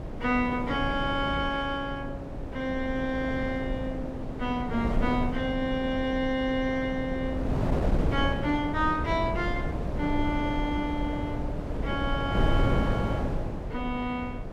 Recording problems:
wind on the microphone; below 340 Hz, SNR 2 dB

